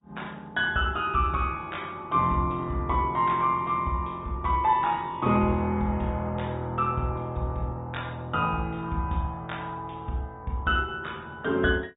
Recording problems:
treble missing; nothing above 4 kHz
lossy codec; Opus, log-spectral distance 2 dB

